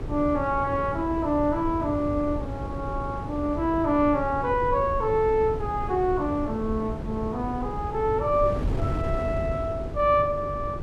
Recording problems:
electrical hum; 50 Hz, harmonics up to 1.3 kHz, SNR 19 dB
wind on the microphone; below 270 Hz, SNR 8 dB

